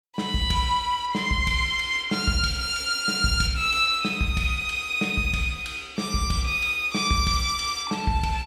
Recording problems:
none

